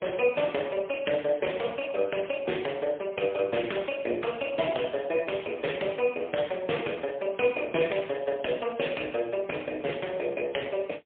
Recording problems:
telephone audio; 260 Hz to 3.4 kHz, AMR-NB, then MP3

